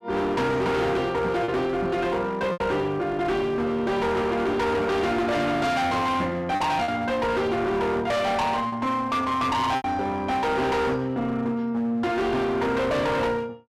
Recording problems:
distorted audio; hard clipping, uneven, signal-to-distortion ratio 6 dB
lost packets; 2% of the sound replaced, filled with repeated pitch periods

